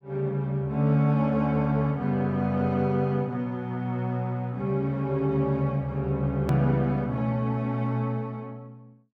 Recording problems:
edit click; at 6.5 s

